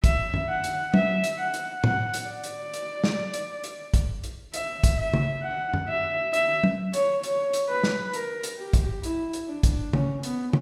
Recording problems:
none

